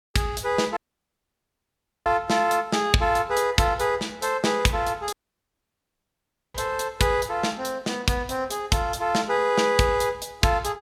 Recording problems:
dropout; at 1 s for 1.5 s and at 5 s for 1.5 s

